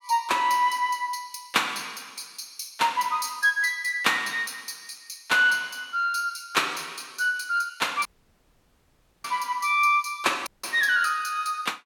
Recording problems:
audio cutting out; at 8 s for 1 s and at 10 s

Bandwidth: 17.5 kHz